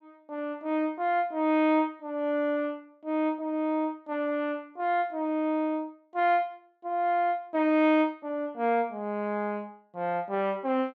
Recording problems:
none

